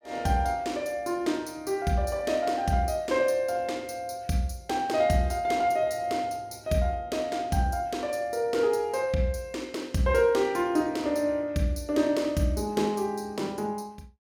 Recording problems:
none

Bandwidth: 17 kHz